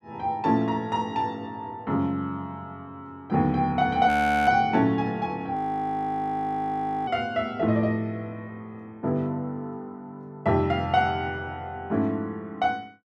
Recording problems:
frozen audio; at 4 s and at 5.5 s for 1.5 s

